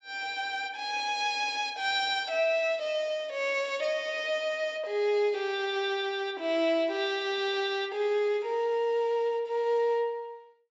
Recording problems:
treble cut off; nothing above 8 kHz

